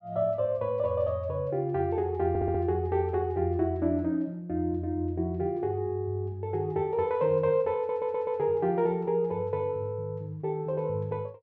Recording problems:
audio stuttering; at 2.5 s and at 8 s

